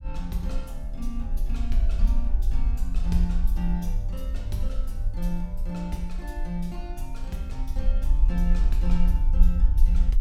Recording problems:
low-frequency rumble; below 48 Hz, SNR -6 dB

